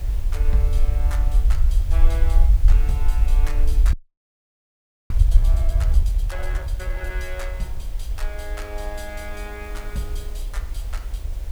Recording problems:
background hiss; SNR 10 dB
rumble; below 54 Hz, SNR -13 dB
frozen audio; at 4 s for 1 s

